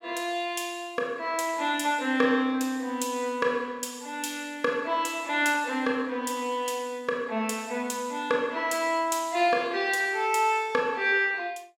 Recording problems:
none

